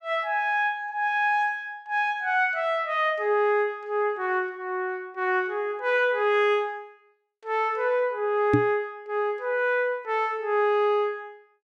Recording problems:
microphone bump; at 8.5 s; peak +7 dB vs average level

